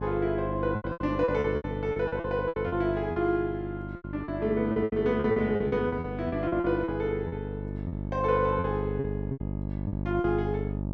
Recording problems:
hum; 50 Hz, harmonics up to 950 Hz, SNR 6 dB
packet loss; 15% of the sound replaced, filled with repeated pitch periods

